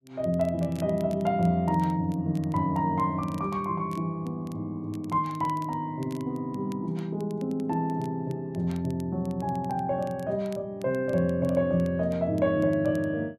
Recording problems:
crackle; vinyl, SNR 27 dB

